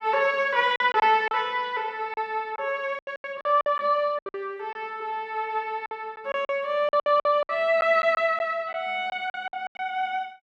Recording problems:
lost packets; 11% of the sound replaced, filled with silence

